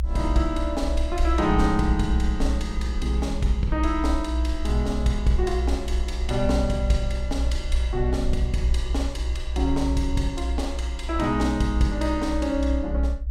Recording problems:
rumble; below 62 Hz, strongest tone 58 Hz, SNR 1 dB

